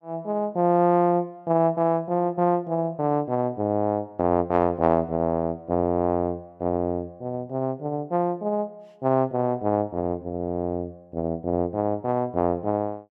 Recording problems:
none

